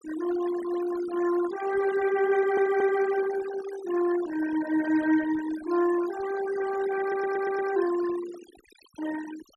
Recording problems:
denoising artefacts; signal-to-artefact ratio 13 dB
audio stuttering; at 2.5 s and at 7 s

